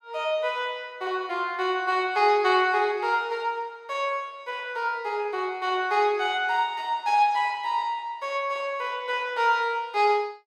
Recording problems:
none

